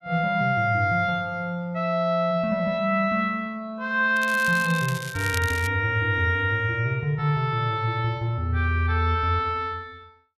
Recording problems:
crackling; from 4 to 5.5 s; loose cable, SNR 13 dB

